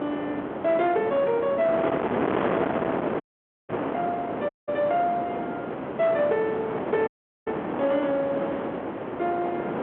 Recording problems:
phone line; 150 Hz to 3.6 kHz, G.711
distorted audio; soft clipping, signal-to-distortion ratio 13 dB
wind on the microphone; below 880 Hz, SNR 3 dB
dropout; at 3 s, at 4.5 s and at 7 s

